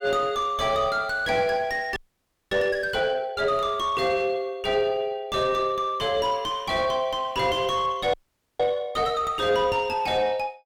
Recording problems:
distorted audio; soft clipping, signal-to-distortion ratio 8 dB
frozen audio; at 2 s for 0.5 s and at 8 s

